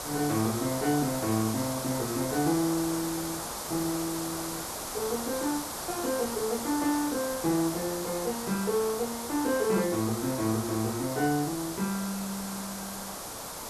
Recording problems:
background hiss; SNR 5 dB

